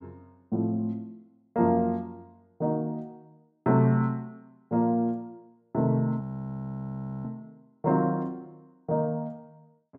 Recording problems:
frozen audio; at 6 s for 1 s

